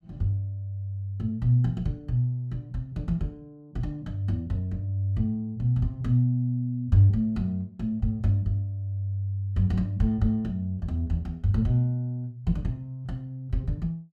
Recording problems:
none

